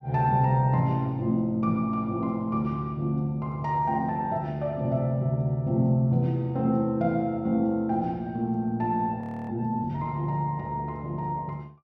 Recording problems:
frozen audio; at 9 s

